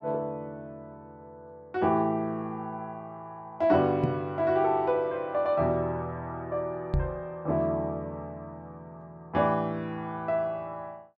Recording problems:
microphone thump; at 4 s and at 7 s; peak +4 dB vs average level

